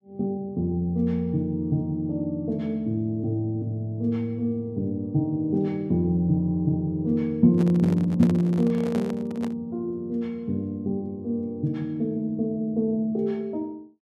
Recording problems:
handling noise; from 7.5 to 9.5 s; peak -4 dB vs average level

